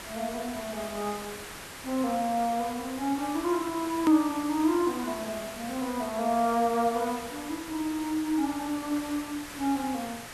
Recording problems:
hiss; slope -2 dB per octave, SNR 11 dB
edit click; at 4 s

